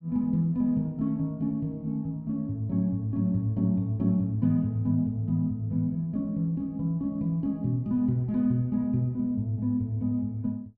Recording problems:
none

